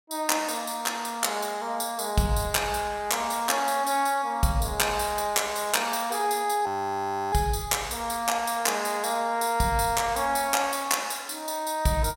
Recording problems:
frozen audio; at 6.5 s for 0.5 s

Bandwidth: 16 kHz